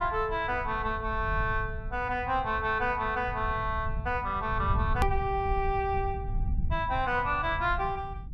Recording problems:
low-frequency rumble; below 100 Hz, SNR 7 dB
edit click; at 5 s

